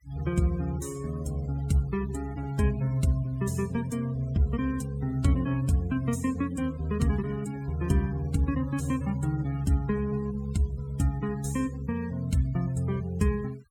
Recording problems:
noise reduction artefacts; signal-to-artefact ratio 19 dB

